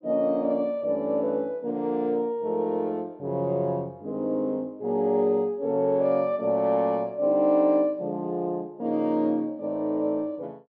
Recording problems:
none

